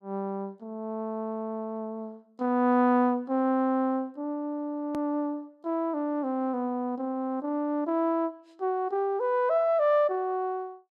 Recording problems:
hard cut with a click; at 5 s

